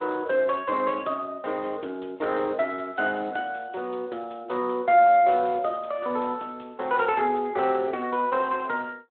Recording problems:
telephone audio; 280 Hz to 3.7 kHz, Speex

